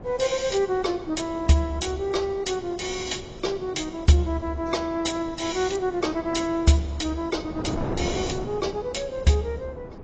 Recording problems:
lossy codec; AAC, log-spectral distance 4 dB, nothing above 7.6 kHz
wind noise; below 500 Hz, SNR 12 dB

